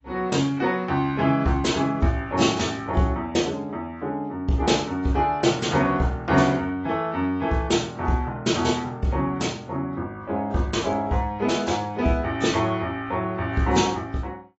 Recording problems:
lossy compression; AAC, log-spectral distance 2 dB, nothing above 7.6 kHz

